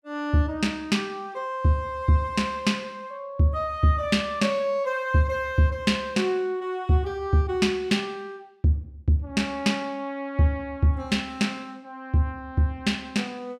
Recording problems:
none

